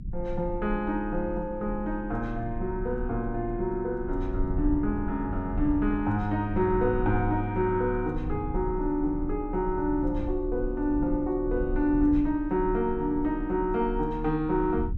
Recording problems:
rumble; below 64 Hz, strongest tone 34 Hz, SNR 9 dB

